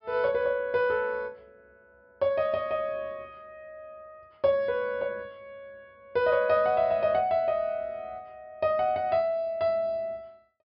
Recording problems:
treble cut off; nothing above 5.5 kHz

